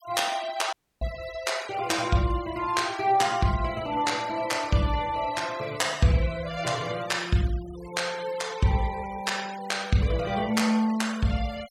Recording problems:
noise reduction artefacts; signal-to-artefact ratio 17 dB
audio cutting out; at 0.5 s

